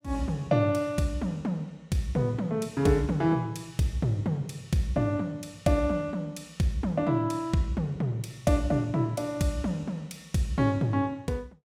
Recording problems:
none

